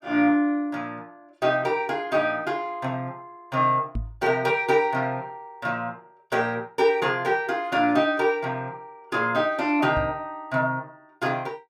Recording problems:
knock on the microphone; at 4 s and at 10 s; peak -2 dB vs average level

